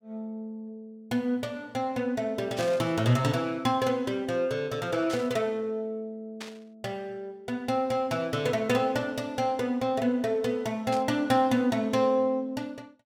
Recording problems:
burst of static; 4 times, first at 2.5 s; peak -6 dB vs average level

